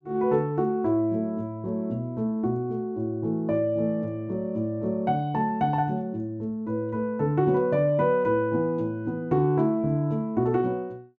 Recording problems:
none

